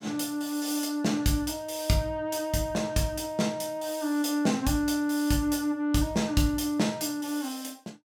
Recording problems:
none

